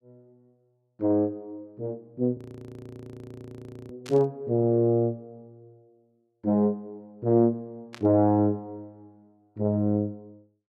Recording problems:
frozen audio; at 2.5 s for 1.5 s
burst of static; at 4 s and at 8 s; peak -12 dB vs average level

